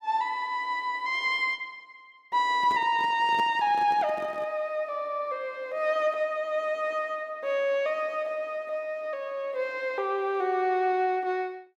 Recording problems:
handling noise; from 2.5 to 4.5 s; peak -6 dB vs average level

